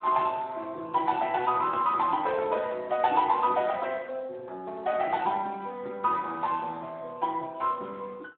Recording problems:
phone line; 240 Hz to 3.6 kHz, Speex

